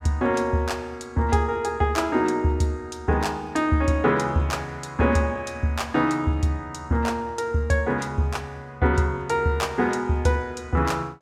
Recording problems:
none

